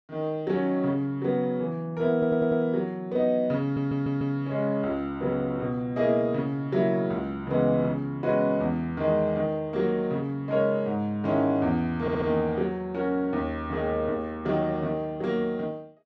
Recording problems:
audio stuttering; at 2 s, at 3.5 s and at 12 s

